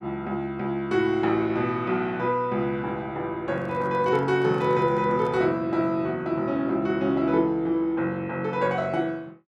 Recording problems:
handling noise; from 3.5 to 5.5 s; peak -12 dB vs average level

